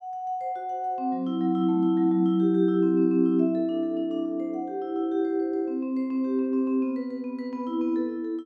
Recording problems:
none

